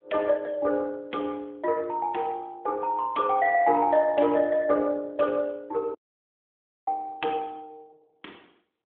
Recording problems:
telephone audio; 240 Hz to 3.4 kHz, AMR-NB
audio cutting out; at 6 s for 1 s

